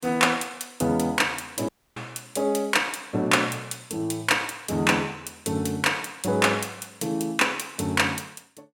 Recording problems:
audio cutting out; at 1.5 s

